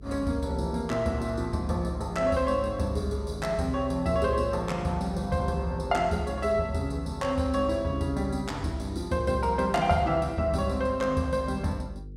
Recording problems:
hum; 50 Hz, harmonics up to 500 Hz, SNR 17 dB

